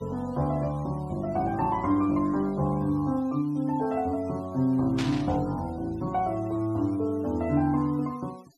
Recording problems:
denoising artefacts; signal-to-artefact ratio 26 dB
burst of static; at 5 s; peak -4 dB vs average level

